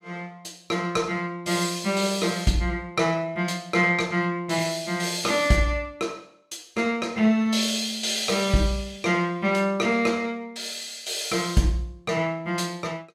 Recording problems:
none

